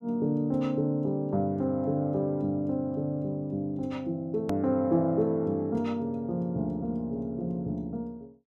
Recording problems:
hard cut with a click; at 4.5 s

